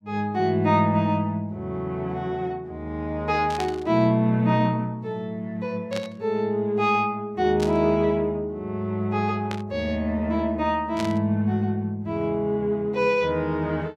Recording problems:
burst of static; 5 times, first at 3.5 s; peak -5 dB vs average level

